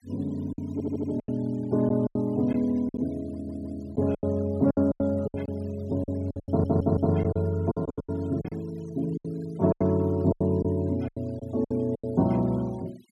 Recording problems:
noise reduction artefacts; signal-to-artefact ratio 26 dB
packet loss; 13% of the sound replaced, filled with silence
audio stuttering; at 0.5 s, at 3.5 s and at 6.5 s

